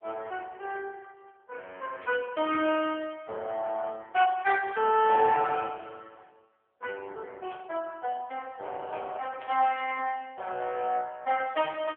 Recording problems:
telephone audio; 340 Hz to 3.3 kHz, AMR-NB
static burst; at 2 s, at 7.5 s and at 9.5 s; peak -15 dB vs average level

